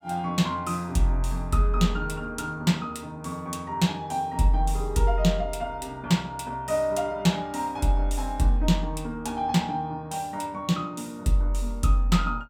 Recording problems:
none

